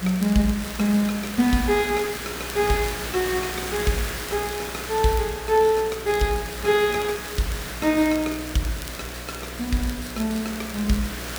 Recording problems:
mains hum; 60 Hz, harmonics up to 720 Hz, SNR 16 dB
background hiss; SNR 9 dB
crackling; vinyl, SNR 19 dB

